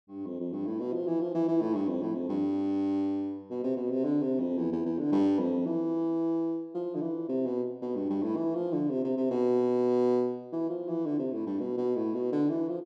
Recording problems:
none

